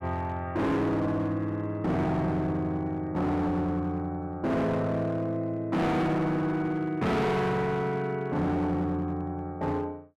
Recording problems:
distortion; hard clipping, uneven, signal-to-distortion ratio 7 dB

